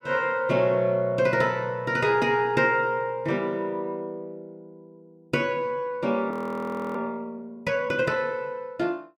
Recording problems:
audio freezing; at 6.5 s for 0.5 s

